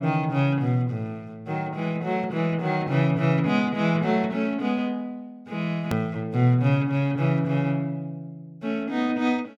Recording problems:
edit click; at 6 s

